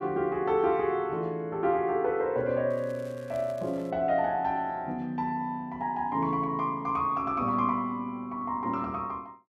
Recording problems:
crackling; from 2.5 to 4 s; loose cable, SNR 27 dB

